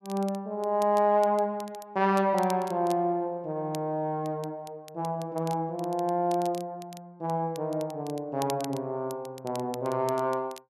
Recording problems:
crackling; vinyl, SNR 20 dB

